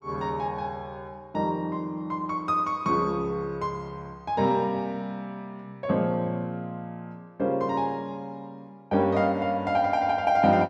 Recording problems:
none

